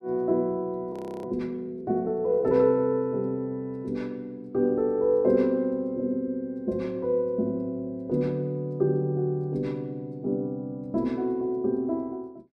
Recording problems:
frozen audio; at 1 s

